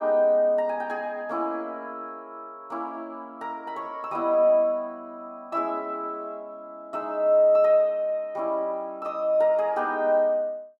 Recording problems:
none

